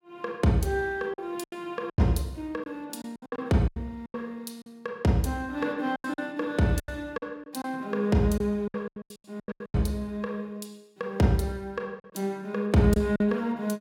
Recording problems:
lost packets; 11% of the sound replaced, filled with silence

